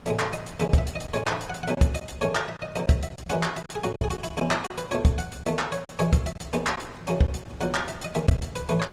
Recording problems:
lossy compression; Opus, log-spectral distance 4 dB, nothing above 18.3 kHz
wind on the microphone; below 750 Hz, SNR 21 dB
lost packets; 6% of the sound replaced, filled with silence

